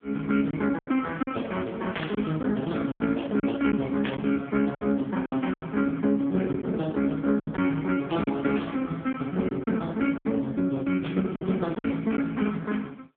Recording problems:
phone line; 220 Hz to 3.6 kHz, AMR-NB
lost packets; 7% of the sound replaced, filled with silence
burst of static; 4 times, first at 2 s; peak -1 dB vs average level

